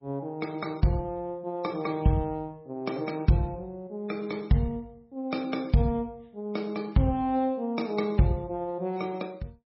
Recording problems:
lossy compression; MP3, log-spectral distance 2 dB, nothing above 5.5 kHz

